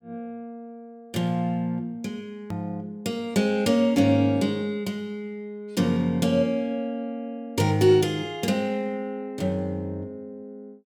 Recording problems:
hard cut with a click; at 2.5 s

